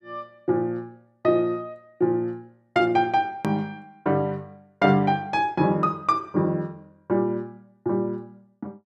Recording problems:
click at an edit; at 3.5 s

